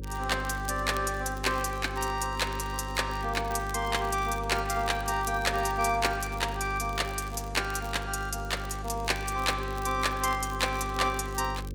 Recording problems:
mains hum; 50 Hz, harmonics up to 550 Hz, SNR 9 dB
crackle; vinyl, SNR 20 dB

